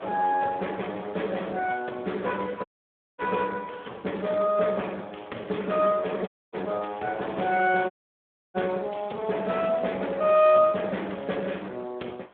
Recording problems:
telephone audio; 240 Hz to 3.4 kHz, Speex
wind noise; below 1.6 kHz, SNR 22 dB
audio cutting out; at 2.5 s for 0.5 s, at 6.5 s and at 8 s for 0.5 s

